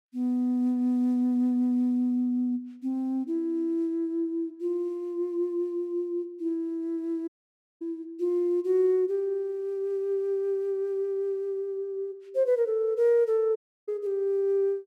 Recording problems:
audio cutting out; at 7.5 s for 0.5 s and at 14 s

